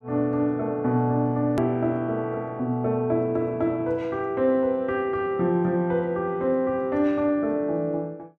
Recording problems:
click at an edit; at 1.5 s

